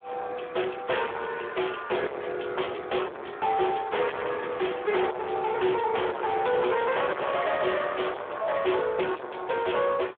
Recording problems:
phone line; 300 Hz to 3.4 kHz, Speex
distorted audio; soft clipping, signal-to-distortion ratio 6 dB

